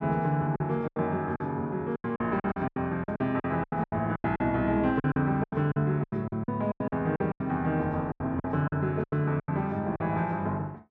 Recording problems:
packet loss; 17% of the sound replaced, filled with silence

